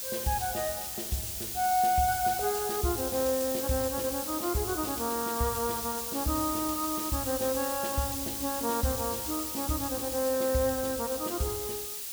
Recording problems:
background hiss; SNR 2 dB

